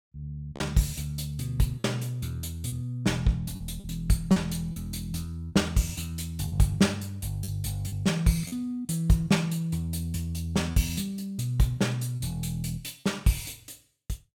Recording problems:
packet loss; 4% of the sound replaced, filled with repeated pitch periods

